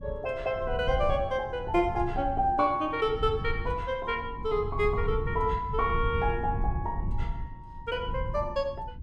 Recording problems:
low-frequency rumble; below 96 Hz, SNR 7 dB

